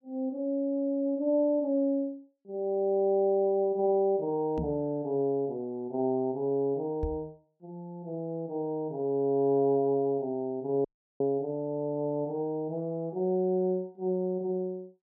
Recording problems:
knock on the microphone; at 4.5 s and at 7 s; peak -1 dB vs average level
audio cutting out; at 11 s

